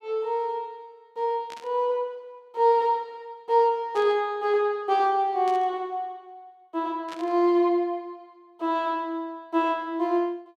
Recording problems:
burst of static; 4 times, first at 1.5 s; peak -11 dB vs average level

